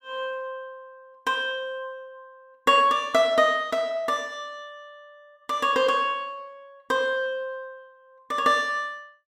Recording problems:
none

